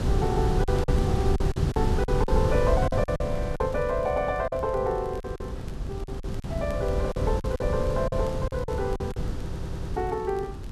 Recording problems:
electrical hum; 50 Hz, harmonics up to 300 Hz, SNR 14 dB
wind noise; below 160 Hz, SNR 1 dB
crackle; vinyl, SNR 28 dB
lost packets; 10% of the sound replaced, filled with silence
stutter; at 9.5 s

